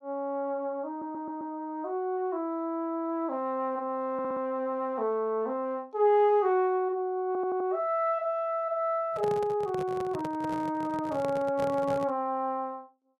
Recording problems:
stutter; at 1 s, at 4 s and at 7.5 s
microphone handling noise; from 9 to 12 s; peak -4 dB vs average level

